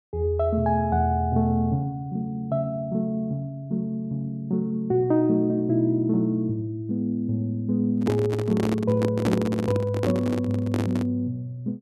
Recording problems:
handling noise; from 8 to 11 s; peak +3 dB vs average level

